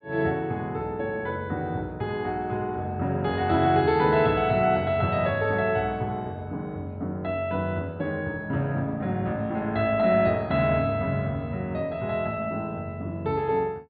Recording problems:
treble cut off; nothing above 4.6 kHz

